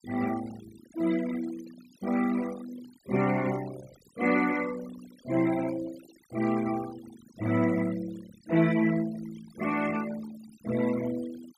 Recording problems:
noise reduction artefacts; signal-to-artefact ratio 16 dB

